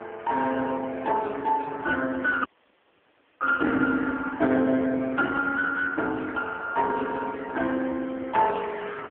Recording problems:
phone line; 220 Hz to 3.4 kHz, AMR-NB
audio cutting out; at 2.5 s for 1 s

